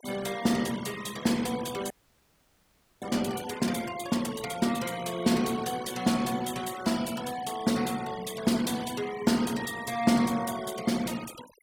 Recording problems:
denoising artefacts; signal-to-artefact ratio 15 dB
frozen audio; at 2 s for 1 s

